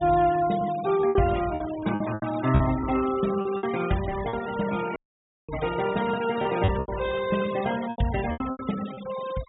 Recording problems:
low-pass filter; nothing above 4 kHz
denoising artefacts; signal-to-artefact ratio 14 dB
packet loss; 11% of the sound replaced, filled with repeated pitch periods
dropout; at 5 s for 0.5 s

